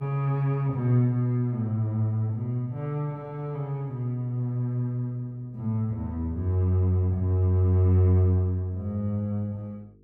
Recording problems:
electrical hum; 50 Hz, harmonics up to 450 Hz, SNR 32 dB

